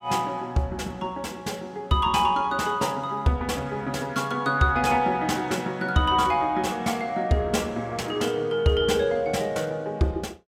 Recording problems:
none

